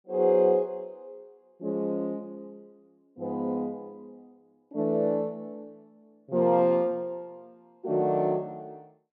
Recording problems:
none

